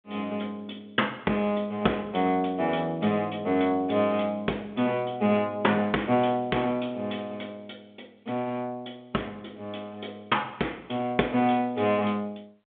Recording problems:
telephone audio; 300 Hz to 3.5 kHz, G.726

